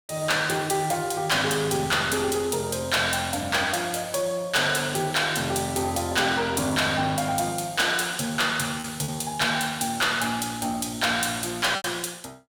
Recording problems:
distorted audio; soft clipping, signal-to-distortion ratio 10 dB
packet loss; 1.3% of the sound replaced, filled with repeated pitch periods

